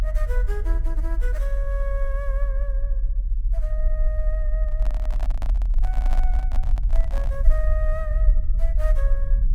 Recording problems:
low-frequency rumble; below 42 Hz, strongest tone 26 Hz, SNR -12 dB
handling noise; from 4.5 to 7.5 s; peak +3 dB vs average level

